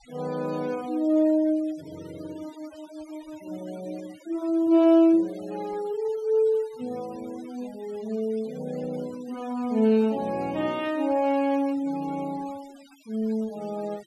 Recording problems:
denoising artefacts; signal-to-artefact ratio 24 dB

